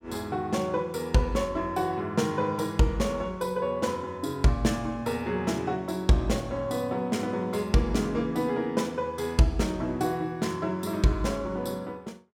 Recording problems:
none

